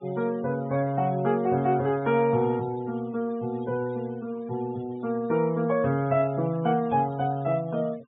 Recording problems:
treble missing; nothing above 4 kHz
noise reduction artefacts; signal-to-artefact ratio 24 dB

